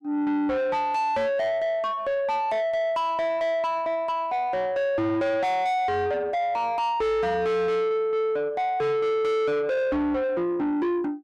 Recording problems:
distortion; soft clipping, signal-to-distortion ratio 6 dB

